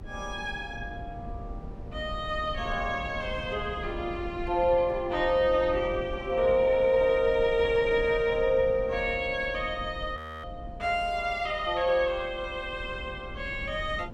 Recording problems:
rumble; below 170 Hz, SNR 14 dB
frozen audio; at 10 s

